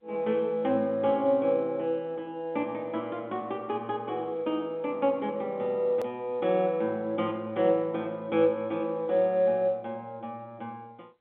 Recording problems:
telephone audio; 190 Hz to 3.5 kHz, G.711
hard cut with a click; at 6 s

